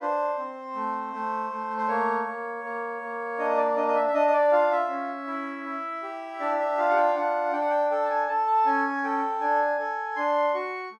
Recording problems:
none

